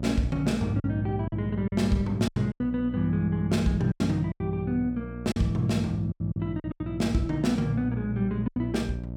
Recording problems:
electrical hum; 60 Hz, harmonics up to 660 Hz, SNR 10 dB
packet loss; 9% of the sound replaced, filled with silence

